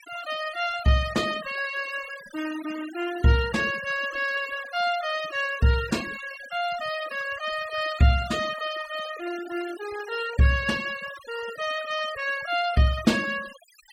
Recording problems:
denoising artefacts; signal-to-artefact ratio 15 dB

